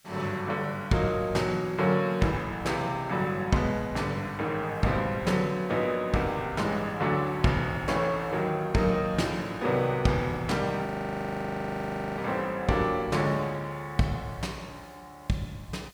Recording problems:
background hiss; slope +2 dB per octave, SNR 30 dB
audio freezing; at 11 s for 1.5 s

